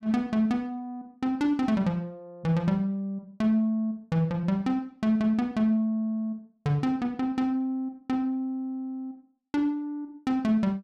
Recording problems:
none

